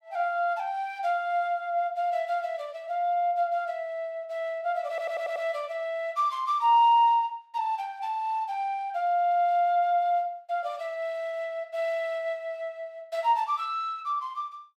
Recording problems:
audio stuttering; at 5 s

